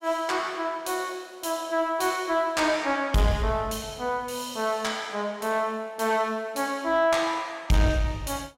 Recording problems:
distortion; soft clipping, signal-to-distortion ratio 10 dB

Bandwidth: 16 kHz